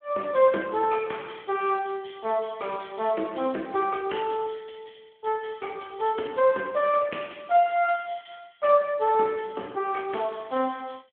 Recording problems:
phone line; 280 Hz to 3.3 kHz, Speex

